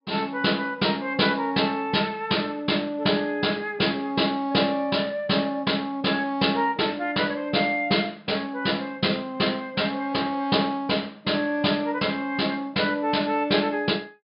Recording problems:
treble missing; nothing above 5.5 kHz

